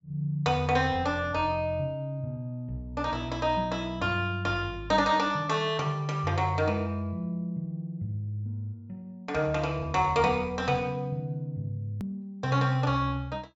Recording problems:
treble cut off; nothing above 8 kHz
hard cut with a click; at 12 s

